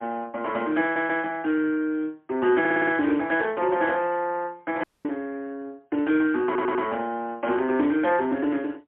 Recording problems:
phone line; 260 Hz to 3.4 kHz, AMR-NB, then MP3
audio stuttering; at 1 s, at 2.5 s and at 6.5 s
audio cutting out; at 5 s

